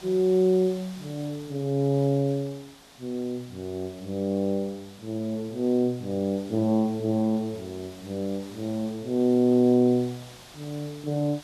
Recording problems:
hiss; SNR 22 dB

